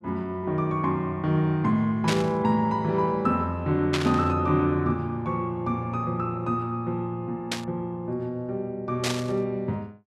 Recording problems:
burst of static; 4 times, first at 2 s; peak +2 dB vs average level

